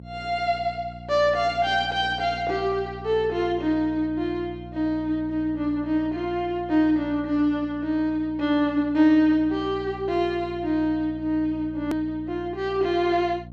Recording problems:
electrical hum; 60 Hz, harmonics up to 600 Hz, SNR 17 dB
hard cut with a click; at 12 s

